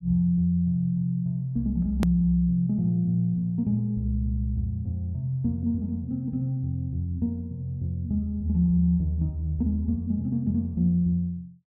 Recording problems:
hard cut with a click; at 2 s

